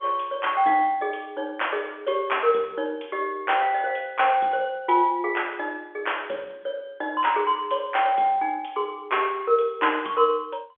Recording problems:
telephone audio; 280 Hz to 3.4 kHz, G.711

